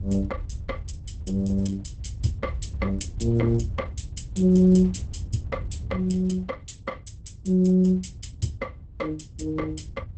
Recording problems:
lossy compression; Opus, log-spectral distance 2 dB, nothing above 8.2 kHz
wind noise; below 96 Hz, SNR 10 dB

